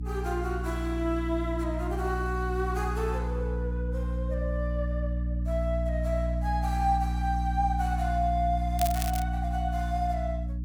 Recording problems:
electrical hum; 60 Hz, harmonics up to 300 Hz, SNR 0 dB
crackling; at 9 s; loose cable, SNR 6 dB

